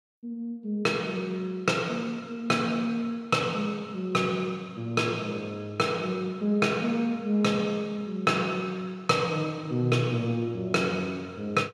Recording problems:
none

